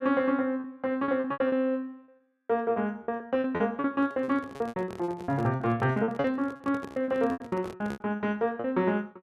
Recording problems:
lost packets; 17% of the sound replaced, filled with repeated pitch periods
handling noise; from 4 to 8 s; peak -5 dB vs average level

